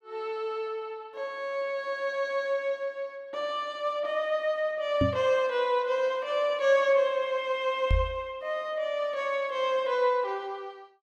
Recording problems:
microphone thump; at 5 s and at 8 s; peak +6 dB vs average level

